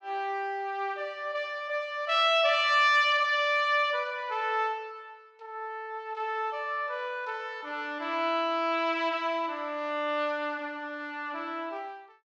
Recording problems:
none

